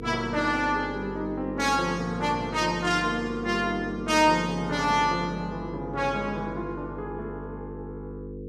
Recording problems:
electrical hum; 50 Hz, harmonics up to 500 Hz, SNR 11 dB

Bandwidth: 14.5 kHz